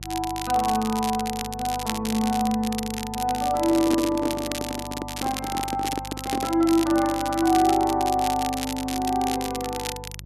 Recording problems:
electrical hum; 50 Hz, harmonics up to 400 Hz, SNR 17 dB
crackle; vinyl, SNR 9 dB
microphone handling noise; from 3.5 to 6.5 s; peak +1 dB vs average level

